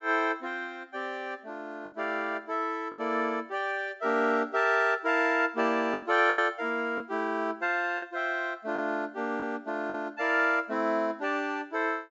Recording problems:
treble missing; nothing above 8 kHz
lost packets; 3% of the sound replaced, filled with the last packet

